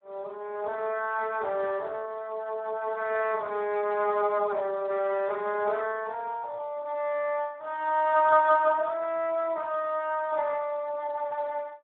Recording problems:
telephone audio; 340 Hz to 2.7 kHz, Speex

